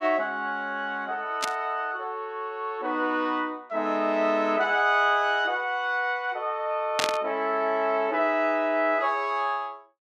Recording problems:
burst of static; at 1.5 s and at 7 s; peak +5 dB vs average level

